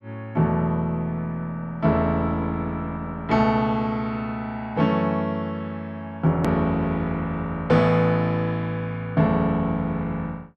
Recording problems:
hard cut with a click; at 6.5 s

